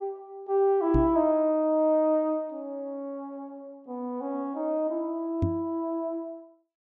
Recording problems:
microphone bump; at 1 s and at 5.5 s; peak +4 dB vs average level

